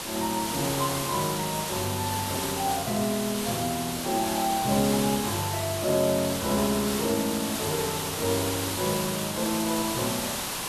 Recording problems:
background hiss; slope -2 dB per octave, SNR 2 dB

